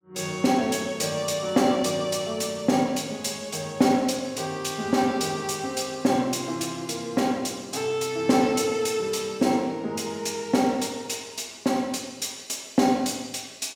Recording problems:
none

